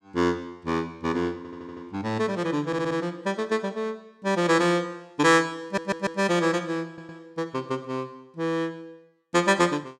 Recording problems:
audio stuttering; 4 times, first at 1.5 s

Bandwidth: 16.5 kHz